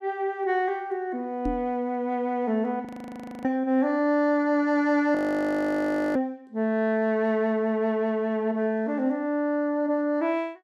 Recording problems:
microphone bump; at 1.5 s; peak -1 dB vs average level
audio freezing; at 3 s for 0.5 s and at 5 s for 1 s

